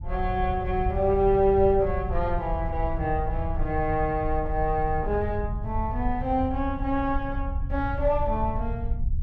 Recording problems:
rumble; below 86 Hz, SNR 6 dB

